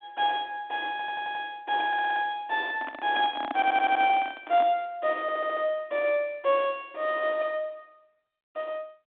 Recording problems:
telephone audio; 220 Hz to 3.6 kHz, G.726
audio stuttering; 4 times, first at 1 s
handling noise; from 2.5 to 4.5 s; peak -2 dB vs average level

